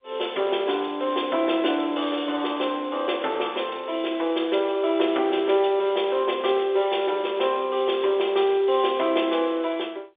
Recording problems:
phone line; 300 Hz to 3.6 kHz, G.711

